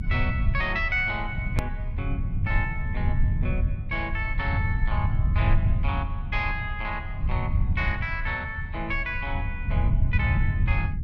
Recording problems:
rumble; below 100 Hz, SNR -2 dB
hard cut with a click; at 1.5 s

